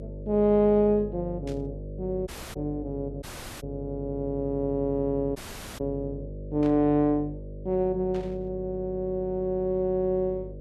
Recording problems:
hum; 50 Hz, harmonics up to 600 Hz, SNR 12 dB
burst of static; at 1.5 s, at 6.5 s and at 8 s; peak -15 dB vs average level
dropout; at 2.5 s, at 3 s and at 5.5 s

